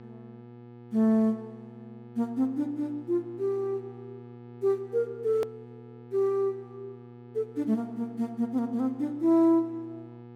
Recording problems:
hum; 60 Hz, harmonics up to 1.3 kHz, SNR 18 dB
edit click; at 5.5 s

